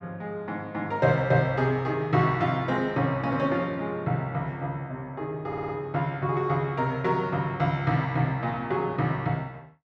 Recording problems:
stutter; at 5.5 s

